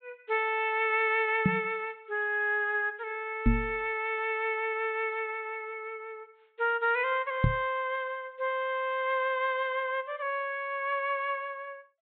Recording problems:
treble cut off; nothing above 4 kHz
microphone thump; at 1.5 s, at 3.5 s and at 7.5 s; peak +8 dB vs average level

